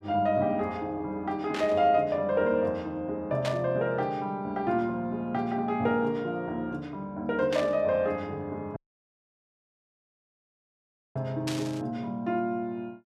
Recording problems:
burst of static; 4 times, first at 1.5 s; peak -2 dB vs average level
dropout; at 9 s for 2.5 s

